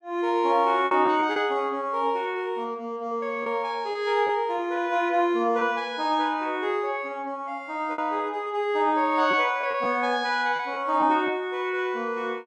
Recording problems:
packet loss; 4% of the sound replaced, filled with repeated pitch periods

